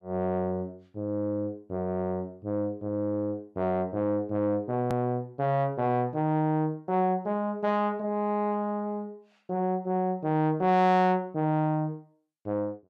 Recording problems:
distortion; soft clipping, signal-to-distortion ratio 11 dB
hard cut with a click; at 5 s

